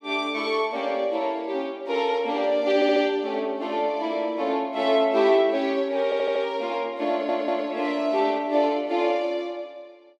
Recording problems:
stutter; at 3 s, at 6 s and at 7 s

